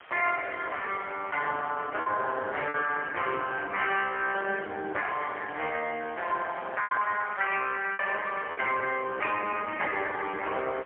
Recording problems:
telephone audio; 340 Hz to 3.3 kHz, AMR-NB, then MP3
hiss; SNR 21 dB
packet loss; 3% of the sound replaced, filled with repeated pitch periods

